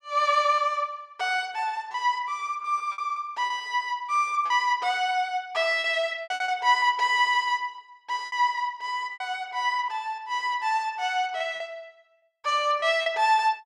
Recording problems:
packet loss; 7% of the sound replaced, filled with repeated pitch periods

